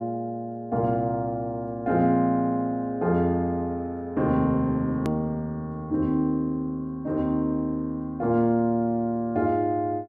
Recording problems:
click at an edit; at 5 s

